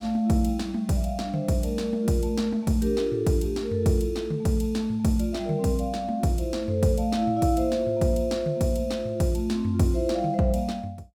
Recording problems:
none

